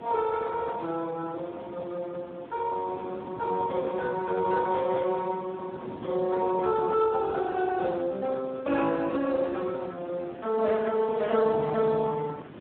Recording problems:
telephone audio; 240 Hz to 2 kHz, Speex
background hiss; SNR 25 dB
wind on the microphone; below 440 Hz, SNR 16 dB

